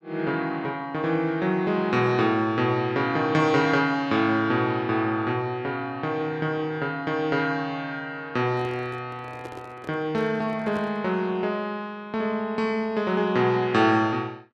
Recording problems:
microphone handling noise; from 8.5 to 11 s; peak -10 dB vs average level

